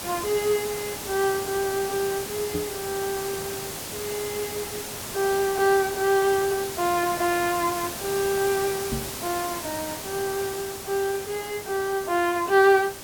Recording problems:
background hiss; slope -3 dB per octave, SNR 7 dB
knock on the microphone; at 2.5 s and at 9 s; peak -2 dB vs average level

